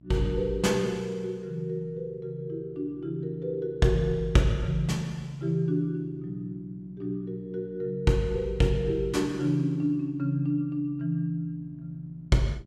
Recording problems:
hum; 60 Hz, harmonics up to 660 Hz, SNR 25 dB

